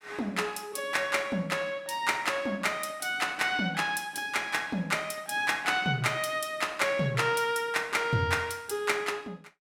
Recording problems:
none

